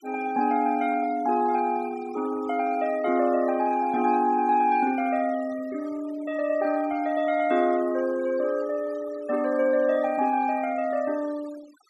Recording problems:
noise reduction artefacts; signal-to-artefact ratio 21 dB

